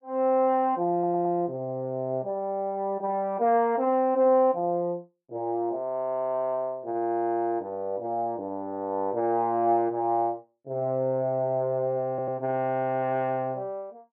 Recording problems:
audio stuttering; at 1 s and at 12 s

